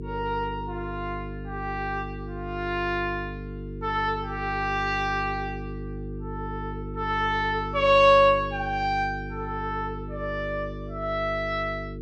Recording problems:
hum; 50 Hz, harmonics up to 450 Hz, SNR 10 dB

